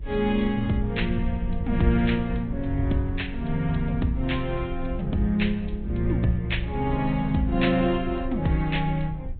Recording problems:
treble cut off; nothing above 3.9 kHz
lossy compression; MP3, then Vorbis, log-spectral distance 2 dB
wind noise; below 64 Hz, SNR 10 dB

